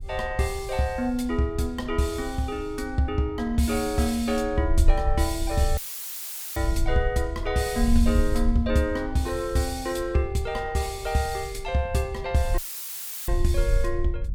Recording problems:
wind on the microphone; below 60 Hz, SNR 6 dB
dropout; at 6 s for 1 s and at 13 s for 0.5 s; filled with static

